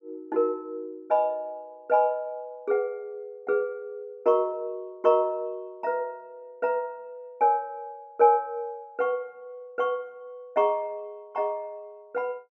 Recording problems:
none

